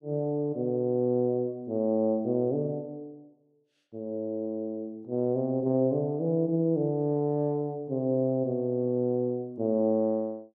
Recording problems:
none

